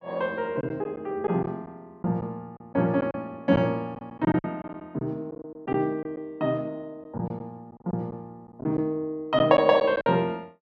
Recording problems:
lost packets; 8% of the sound replaced, filled with silence

